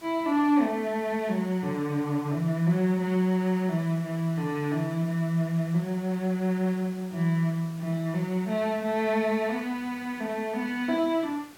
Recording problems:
hiss; slope -3 dB per octave, SNR 23 dB

